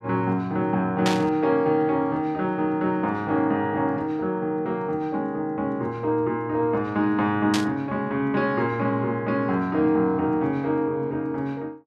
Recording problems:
burst of static; at 1 s and at 7.5 s; peak +2 dB vs average level

